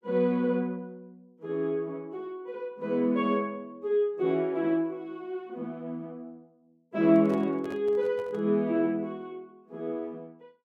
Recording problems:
microphone handling noise; from 7 to 8.5 s; peak -11 dB vs average level

